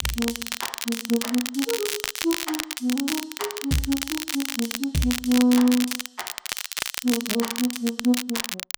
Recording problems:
crackling; vinyl, SNR 4 dB

